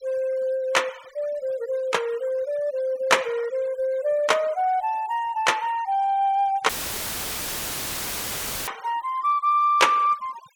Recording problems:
noise reduction artefacts; signal-to-artefact ratio 24 dB
dropout; at 6.5 s for 2 s; filled with static

